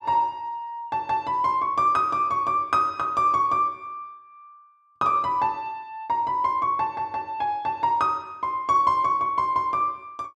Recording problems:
none

